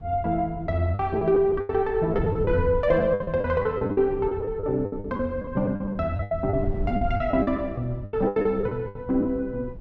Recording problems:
wind on the microphone; below 110 Hz, SNR 12 dB
lost packets; 15% of the sound replaced, filled with the last packet

